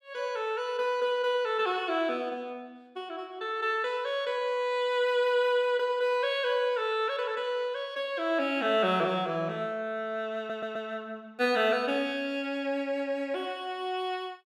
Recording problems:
audio stuttering; at 10 s

